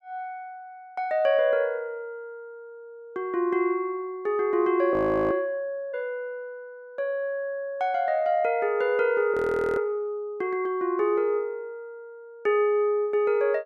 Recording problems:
frozen audio; at 5 s and at 9.5 s

